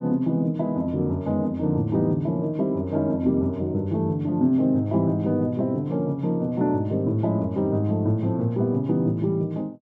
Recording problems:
none

